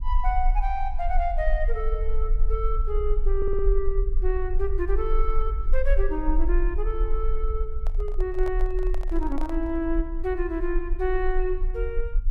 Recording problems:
rumble; below 40 Hz, strongest tone 18 Hz, SNR -1 dB
audio stuttering; at 3.5 s
handling noise; from 8 to 10 s; peak -6 dB vs average level

